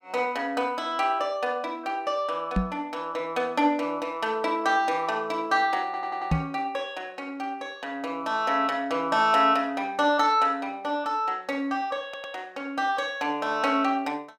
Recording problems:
knock on the microphone; at 2.5 s and at 6.5 s; peak +5 dB vs average level
stutter; at 6 s and at 12 s

